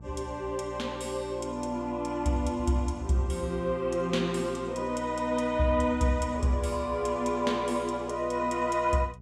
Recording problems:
electrical hum; 60 Hz, harmonics up to 480 Hz, SNR 17 dB

